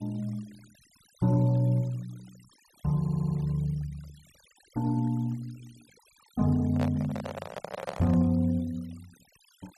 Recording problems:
denoising artefacts; signal-to-artefact ratio 26 dB
stutter; at 3 s
microphone handling noise; from 6.5 to 8.5 s; peak -2 dB vs average level

